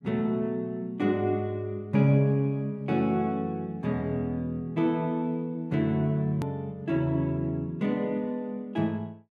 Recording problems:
edit click; at 6.5 s

